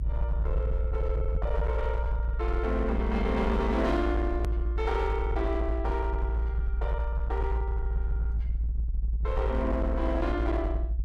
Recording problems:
distorted audio; hard clipping, uneven, signal-to-distortion ratio 10 dB
rumble; below 58 Hz, strongest tone 56 Hz, SNR -1 dB
click at an edit; at 4.5 s

